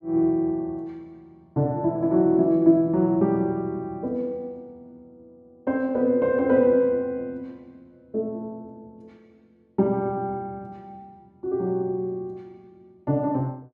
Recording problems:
none

